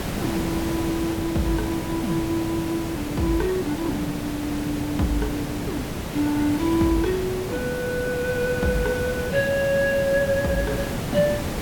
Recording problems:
hiss; slope -5 dB per octave, SNR 4 dB

